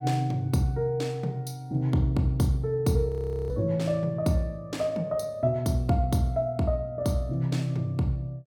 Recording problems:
audio freezing; at 3 s

